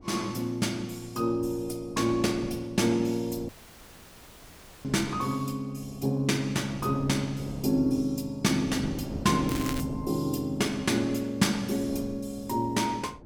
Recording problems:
wind on the microphone; below 370 Hz, SNR 15 dB
audio cutting out; at 3.5 s for 1.5 s
crackling; at 9.5 s; loose cable, SNR 11 dB

